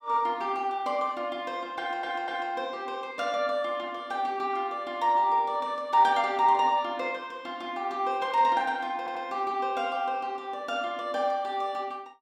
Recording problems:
audio stuttering; at 2 s and at 9 s

